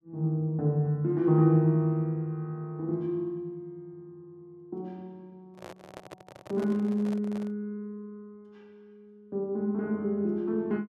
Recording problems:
handling noise; from 5.5 to 7.5 s; peak -10 dB vs average level

